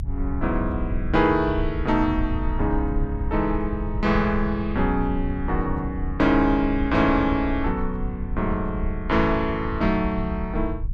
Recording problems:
low-frequency rumble; below 74 Hz, strongest tone 28 Hz, SNR 7 dB

